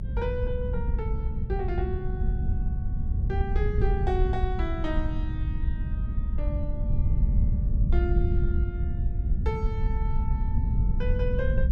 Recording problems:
low-frequency rumble; below 88 Hz, SNR -7 dB

